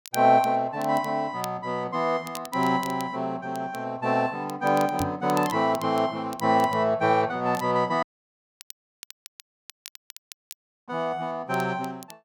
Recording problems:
crackle; vinyl, SNR 19 dB
microphone bump; at 5 s; peak -2 dB vs average level
dropout; at 8 s for 3 s

